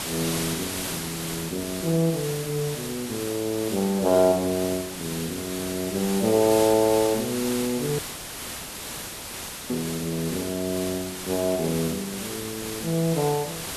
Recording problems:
hiss; slope -2 dB per octave, SNR 6 dB
audio cutting out; at 8 s for 1.5 s

